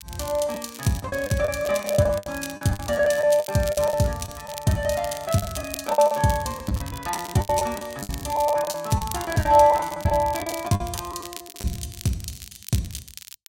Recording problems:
crackle; vinyl, SNR 15 dB
packet loss; 15% of the sound replaced, filled with the last packet

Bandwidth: 16 kHz